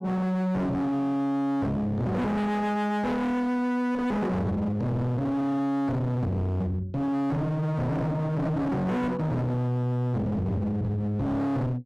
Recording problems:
distorted audio; hard clipping, signal-to-distortion ratio 6 dB

